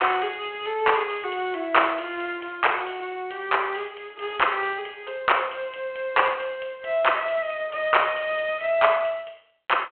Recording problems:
telephone audio; 300 Hz to 3.3 kHz, G.726

